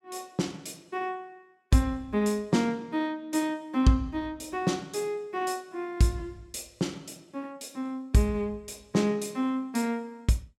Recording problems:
none

